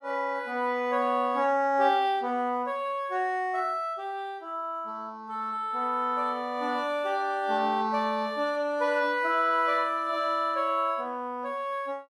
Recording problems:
none

